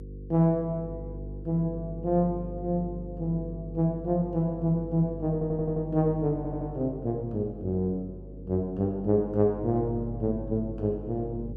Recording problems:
mains hum; 50 Hz, harmonics up to 500 Hz, SNR 12 dB
audio stuttering; at 5.5 s and at 6.5 s

